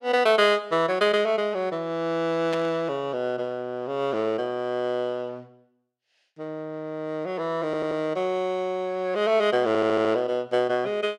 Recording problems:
burst of static; at 2.5 s; peak -5 dB vs average level
stutter; at 7.5 s and at 9.5 s

